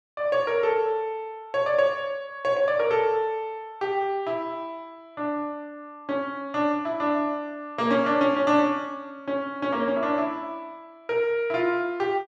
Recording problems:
none

